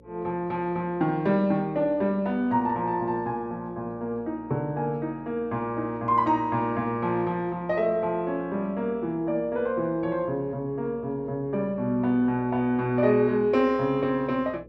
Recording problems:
hum; 60 Hz, harmonics up to 540 Hz, SNR 25 dB

